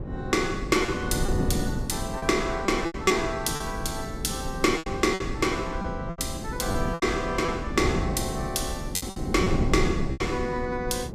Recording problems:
wind noise; below 260 Hz, SNR 5 dB
lost packets; 7% of the sound replaced, filled with repeated pitch periods

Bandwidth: 15 kHz